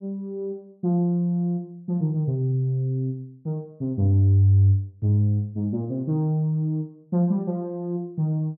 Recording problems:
none

